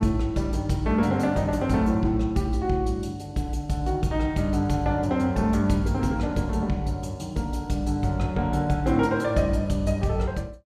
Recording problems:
none

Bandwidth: 14.5 kHz